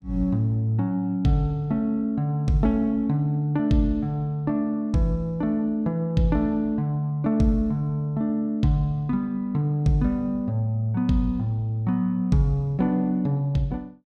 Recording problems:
none

